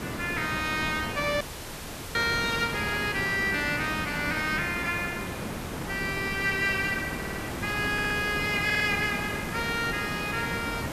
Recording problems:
hiss; slope -5 dB per octave, SNR 6 dB
dropout; at 1.5 s for 0.5 s
audio stuttering; at 7 s, at 8 s and at 8.5 s

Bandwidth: 14.5 kHz